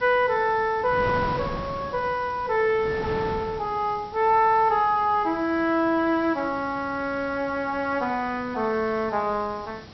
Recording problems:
low-pass filter; nothing above 5.6 kHz
background hiss; SNR 27 dB
wind noise; below 870 Hz, SNR 15 dB

